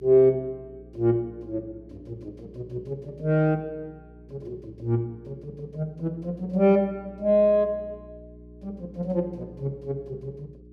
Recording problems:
electrical hum; 60 Hz, harmonics up to 420 Hz, SNR 22 dB

